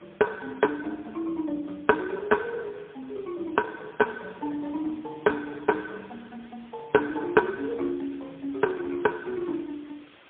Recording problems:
phone line; 220 Hz to 2 kHz, AMR-NB, then MP3
background hiss; SNR 26 dB

